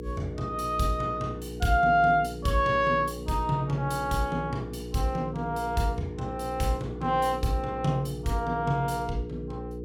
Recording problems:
hum; 60 Hz, harmonics up to 480 Hz, SNR 10 dB

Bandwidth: 17 kHz